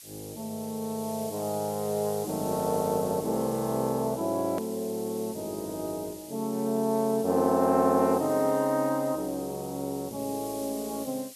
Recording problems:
hiss; SNR 14 dB
edit click; at 4.5 s

